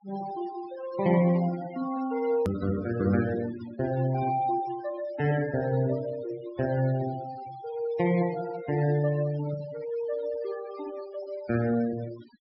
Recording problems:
treble missing; nothing above 5.5 kHz
denoising artefacts; signal-to-artefact ratio 16 dB
hard cut with a click; at 2.5 s

